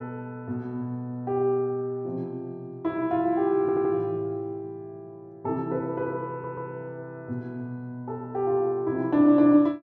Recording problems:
stutter; at 3.5 s and at 6.5 s

